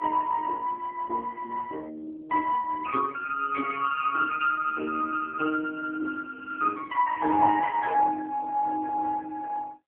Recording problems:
telephone audio; 240 Hz to 2.5 kHz, AMR-NB

